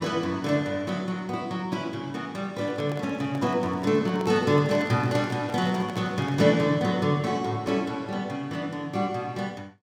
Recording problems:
microphone handling noise; from 2.5 to 6.5 s; peak -7 dB vs average level

